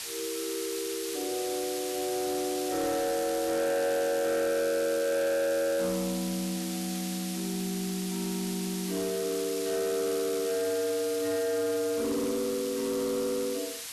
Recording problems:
distortion; soft clipping, signal-to-distortion ratio 10 dB
hiss; slope +2 dB per octave, SNR 6 dB

